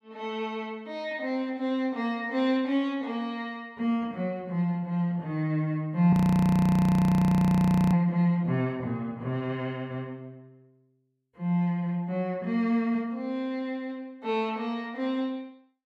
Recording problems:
audio freezing; at 6 s for 2 s

